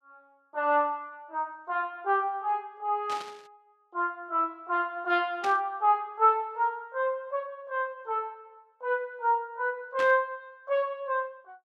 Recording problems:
burst of static; at 3 s, at 5.5 s and at 10 s; peak -5 dB vs average level

